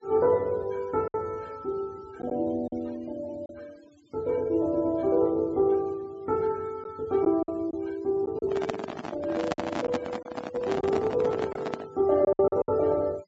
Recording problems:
treble missing; nothing above 7.7 kHz
denoising artefacts; signal-to-artefact ratio 24 dB
lost packets; 4% of the sound replaced, filled with silence
microphone handling noise; from 8.5 to 12 s; peak +2 dB vs average level

